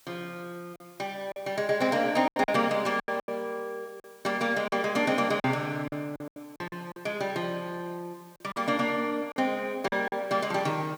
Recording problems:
hiss; slope +1 dB per octave, SNR 27 dB
packet loss; 9% of the sound replaced, filled with silence

